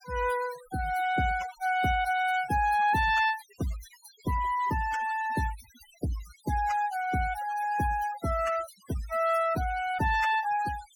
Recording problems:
denoising artefacts; signal-to-artefact ratio 17 dB

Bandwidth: 18 kHz